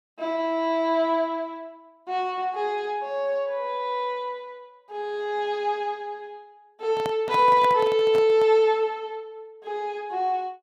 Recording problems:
handling noise; from 7 to 8.5 s; peak -5 dB vs average level

